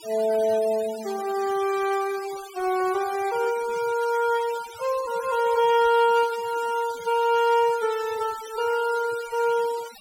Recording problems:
denoising artefacts; signal-to-artefact ratio 17 dB

